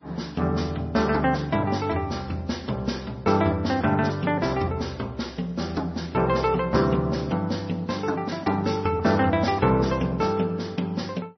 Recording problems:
codec artefacts; MP3, then MP3, log-spectral distance 3 dB, nothing above 5.8 kHz

